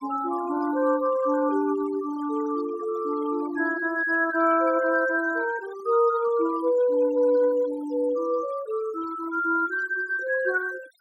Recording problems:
denoising artefacts; signal-to-artefact ratio 20 dB

